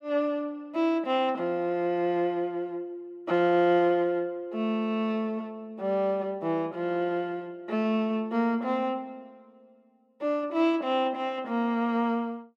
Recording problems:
none

